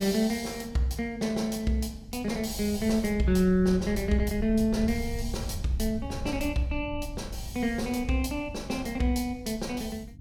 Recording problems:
hum; 50 Hz, harmonics up to 300 Hz, SNR 22 dB
wind noise; below 90 Hz, SNR 11 dB

